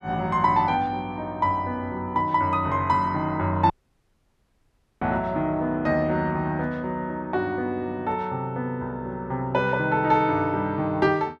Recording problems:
dropout; at 3.5 s for 1.5 s

